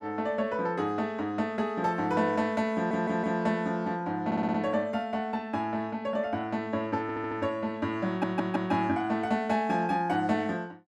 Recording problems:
stutter; 4 times, first at 3 s

